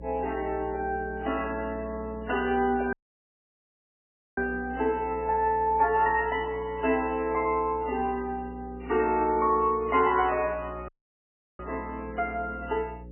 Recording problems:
lossy compression; MP3, log-spectral distance 3 dB, nothing above 2.8 kHz
hum; 60 Hz, harmonics up to 540 Hz, SNR 16 dB
audio cutting out; at 3 s for 1.5 s and at 11 s for 0.5 s

